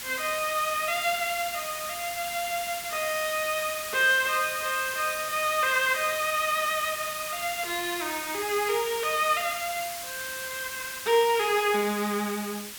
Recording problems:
background hiss; SNR 7 dB

